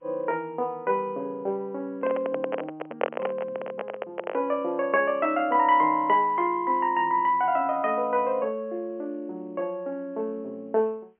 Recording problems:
phone line; 280 Hz to 3.7 kHz, G.711
handling noise; from 2 to 4.5 s; peak +5 dB vs average level

